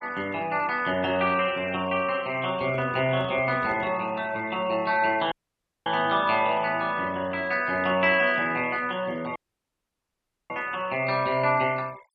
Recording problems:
noise reduction artefacts; signal-to-artefact ratio 24 dB
microphone handling noise; from 2.5 to 4 s; peak -12 dB vs average level
audio cutting out; at 5.5 s for 0.5 s and at 9.5 s for 1 s

